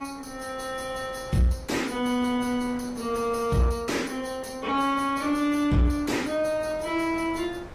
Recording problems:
codec artefacts; AAC, log-spectral distance 3 dB, nothing above 13.8 kHz
distorted audio; soft clipping, signal-to-distortion ratio 10 dB
wind noise; below 1.1 kHz, SNR 20 dB

